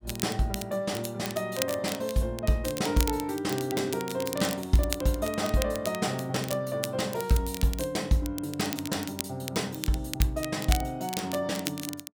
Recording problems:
crackle; vinyl, SNR 8 dB

